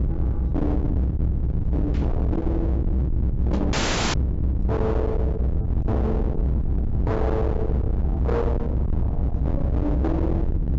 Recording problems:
treble cut off; nothing above 7.5 kHz
distorted audio; hard clipping, signal-to-distortion ratio 6 dB
low-frequency rumble; below 150 Hz, strongest tone 64 Hz, SNR -3 dB
static burst; at 2 s and at 3.5 s; peak -13 dB vs average level
dropout; at 3.5 s

